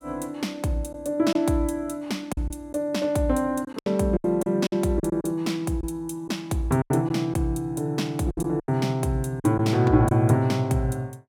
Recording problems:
packet loss; 7% of the sound replaced, filled with silence

